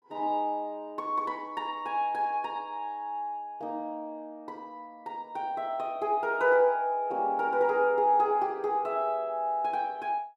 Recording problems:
none

